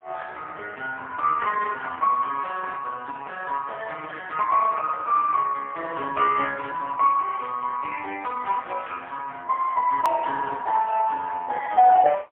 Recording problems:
telephone audio; 320 Hz to 3.3 kHz, AMR-NB, then MP3
click at an edit; at 10 s

